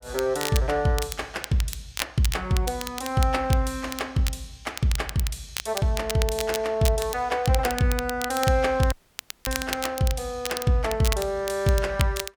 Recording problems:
crackling; vinyl, SNR 9 dB
dropout; at 9 s for 0.5 s

